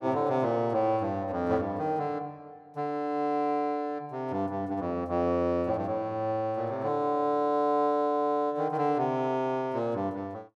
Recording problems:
none

